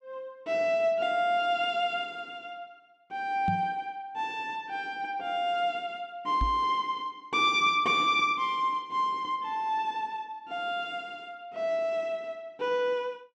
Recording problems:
knock on the microphone; at 3.5 s and at 6.5 s; peak +1 dB vs average level

